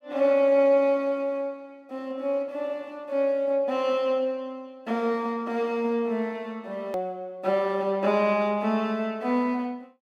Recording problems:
click at an edit; at 7 s

